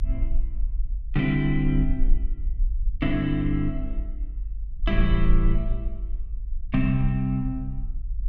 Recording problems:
low-frequency rumble; below 46 Hz, SNR 4 dB

